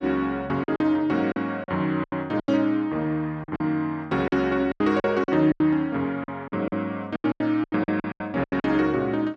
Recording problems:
packet loss; 14% of the sound replaced, filled with silence

